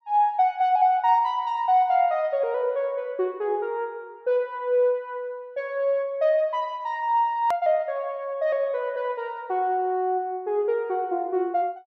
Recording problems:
hard cut with a click; at 7.5 s

